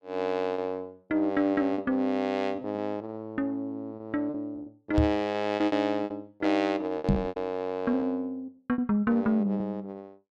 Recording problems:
lost packets; 8% of the sound replaced, filled with repeated pitch periods
microphone thump; at 5 s and at 7 s; peak +8 dB vs average level

